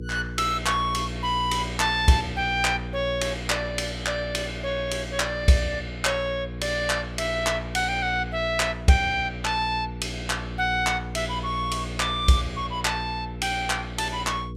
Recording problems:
electrical hum; 60 Hz, harmonics up to 480 Hz, SNR 10 dB

